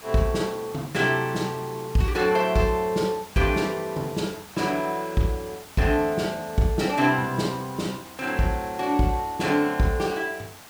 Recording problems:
background hiss; SNR 18 dB

